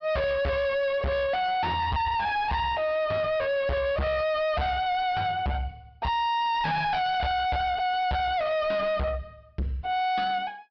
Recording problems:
treble cut off; nothing above 5.5 kHz
distortion; soft clipping, signal-to-distortion ratio 6 dB

